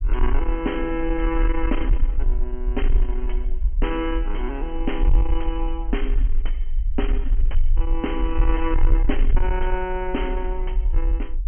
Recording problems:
treble missing; nothing above 3.2 kHz
distortion; soft clipping, signal-to-distortion ratio 11 dB
rumble; below 42 Hz, strongest tone 22 Hz, SNR -3 dB

